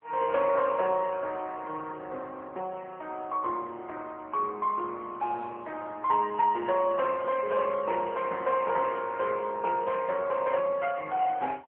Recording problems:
phone line; 220 Hz to 2.8 kHz, AMR-NB

